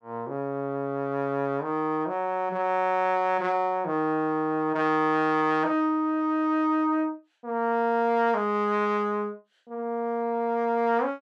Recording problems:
none

